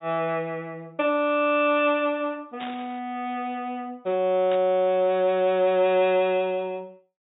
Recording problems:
treble cut off; nothing above 4 kHz
burst of static; at 2.5 s and at 4.5 s; peak -10 dB vs average level

